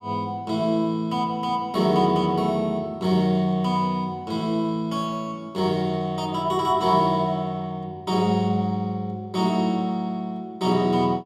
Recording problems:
none

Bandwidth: 14 kHz